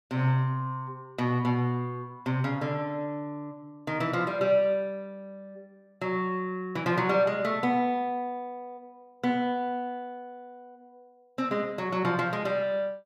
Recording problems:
none

